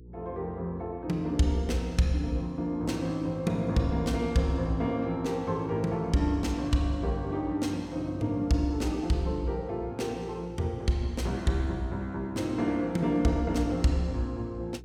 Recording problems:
hum; 60 Hz, harmonics up to 480 Hz, SNR 19 dB

